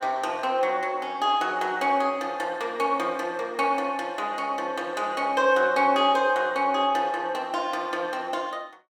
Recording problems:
none

